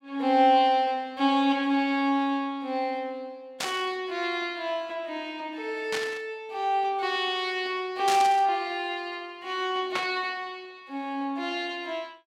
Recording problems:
static burst; 4 times, first at 3.5 s; peak 0 dB vs average level

